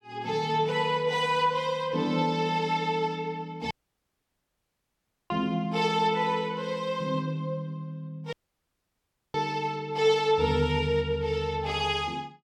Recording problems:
audio cutting out; at 3.5 s for 1.5 s and at 8.5 s for 1 s

